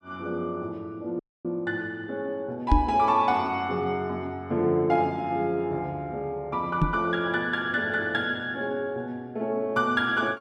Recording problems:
audio cutting out; at 1 s
microphone thump; at 2.5 s and at 7 s; peak +9 dB vs average level

